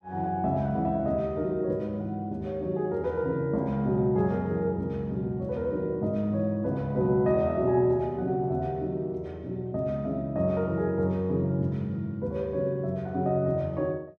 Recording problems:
none

